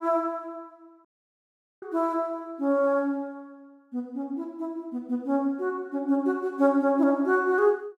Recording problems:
dropout; at 1 s for 1 s

